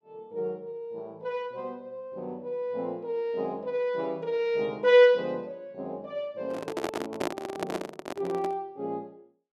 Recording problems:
handling noise; from 6.5 to 8.5 s; peak +3 dB vs average level

